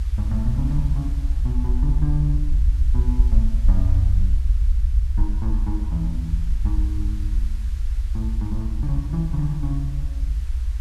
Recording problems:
hiss; slope -1 dB per octave, SNR 21 dB
low-frequency rumble; below 64 Hz, SNR -4 dB

